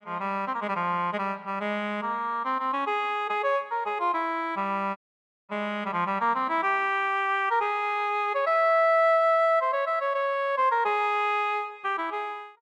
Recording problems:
dropout; at 5 s for 0.5 s

